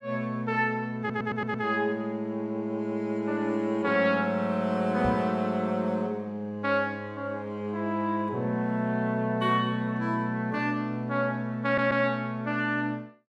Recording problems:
stutter; at 1 s and at 12 s
microphone thump; at 5 s; peak -2 dB vs average level

